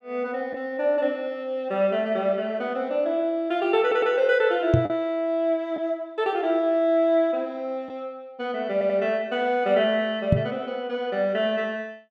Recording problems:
lost packets; 0.6% of the sound replaced, filled with the last packet
stutter; at 4 s and at 8.5 s
microphone thump; at 4.5 s and at 10 s; peak +8 dB vs average level

